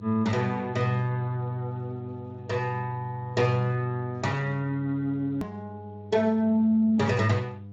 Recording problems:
lossy codec; AAC, then Speex, log-spectral distance 2 dB, nothing above 19.5 kHz
hum; 50 Hz, harmonics up to 700 Hz, SNR 16 dB
click at an edit; at 5.5 s

